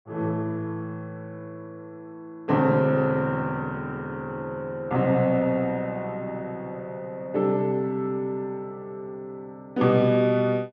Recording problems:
none

